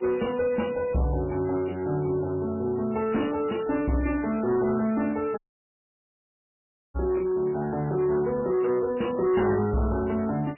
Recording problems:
lossy compression; MP3, log-spectral distance 5 dB, nothing above 2.9 kHz
distorted audio; soft clipping, signal-to-distortion ratio 11 dB
hiss; SNR 29 dB
crackle; from 4 to 8.5 s; loose cable, SNR 23 dB
audio cutting out; at 5.5 s for 1.5 s

